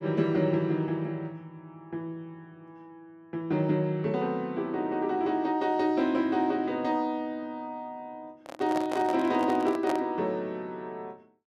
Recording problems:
handling noise; from 8.5 to 10 s; peak -1 dB vs average level

